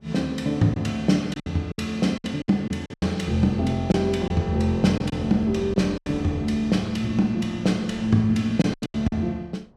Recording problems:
wind on the microphone; below 460 Hz, SNR 24 dB
packet loss; 9% of the sound replaced, filled with silence

